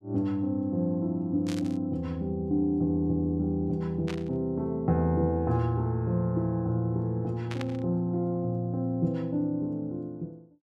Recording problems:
burst of static; at 1.5 s, at 4 s and at 7.5 s; peak -6 dB vs average level

